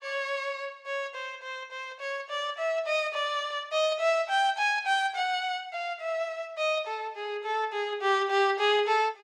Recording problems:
none

